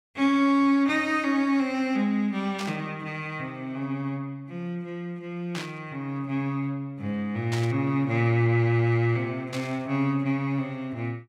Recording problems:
static burst; 4 times, first at 2.5 s; peak -5 dB vs average level

